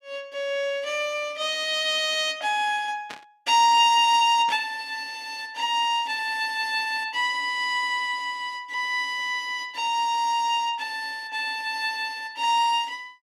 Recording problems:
static burst; at 3 s and at 4.5 s; peak -9 dB vs average level

